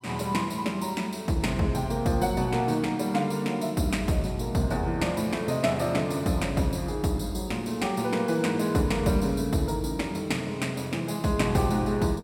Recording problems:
none

